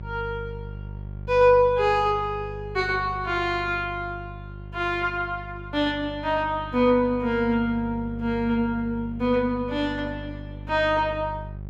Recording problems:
hum; 50 Hz, harmonics up to 550 Hz, SNR 14 dB

